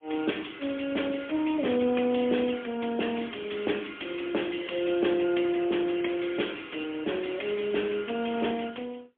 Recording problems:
telephone audio; 220 Hz to 3.4 kHz, AMR-NB, then MP3
crackling; from 2.5 to 5 s; loose cable, SNR 27 dB

